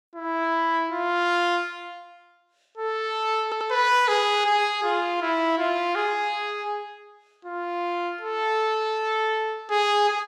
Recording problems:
stutter; at 3.5 s

